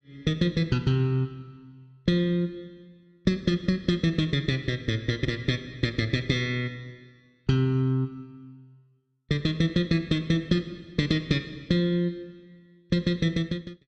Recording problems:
none

